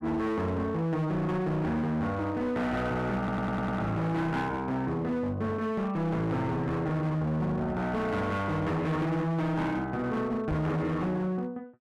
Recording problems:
distortion; hard clipping, signal-to-distortion ratio 8 dB
stutter; at 3 s
microphone thump; at 11 s; peak 0 dB vs average level

